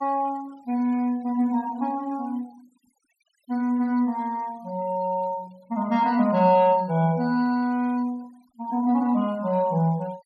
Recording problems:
denoising artefacts; signal-to-artefact ratio 27 dB

